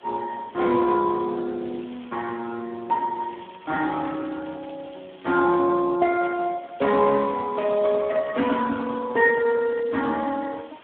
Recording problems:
telephone audio; 170 Hz to 3 kHz, Speex
background hiss; SNR 27 dB
crackle; at 1.5 s, from 3 to 5.5 s and from 7 to 10 s; loose cable, SNR 27 dB

